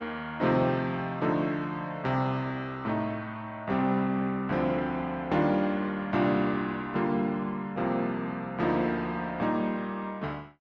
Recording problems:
codec artefacts; Opus, log-spectral distance 2 dB

